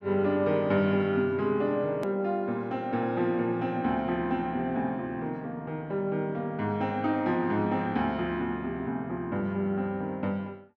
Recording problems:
edit click; at 2 s

